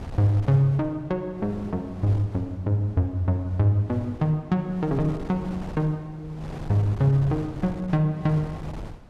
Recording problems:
wind on the microphone; below 390 Hz, SNR 15 dB

